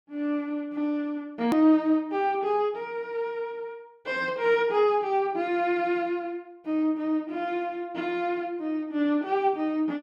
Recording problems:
hard cut with a click; at 1.5 s

